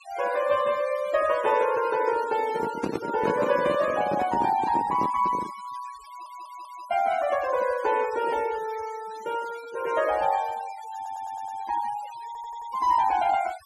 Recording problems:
noise reduction artefacts; signal-to-artefact ratio 17 dB
handling noise; from 2.5 to 5.5 s; peak +1 dB vs average level
audio stuttering; at 6 s, at 11 s and at 12 s

